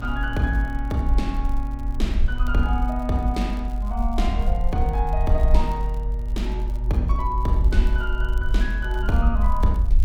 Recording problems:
hum; 60 Hz, harmonics up to 1.2 kHz, SNR 14 dB
rumble; below 50 Hz, SNR -1 dB
crackle; vinyl, SNR 28 dB

